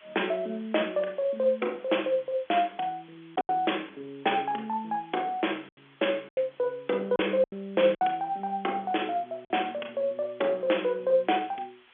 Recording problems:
phone line; 280 Hz to 3.5 kHz, G.711
hiss; SNR 28 dB
packet loss; 4% of the sound replaced, filled with silence

